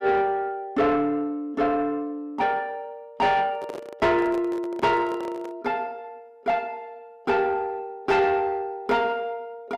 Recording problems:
distortion; soft clipping, signal-to-distortion ratio 10 dB
handling noise; from 3.5 to 5.5 s; peak -6 dB vs average level

